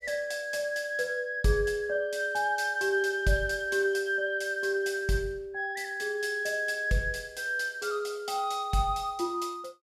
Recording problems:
none

